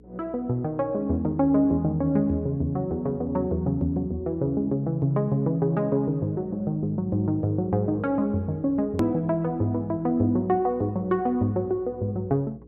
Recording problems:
mains hum; 60 Hz, harmonics up to 480 Hz, SNR 26 dB
hard cut with a click; at 9 s

